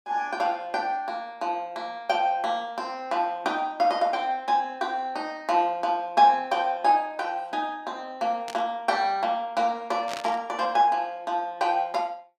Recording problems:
static burst; at 8.5 s and at 10 s; peak -5 dB vs average level

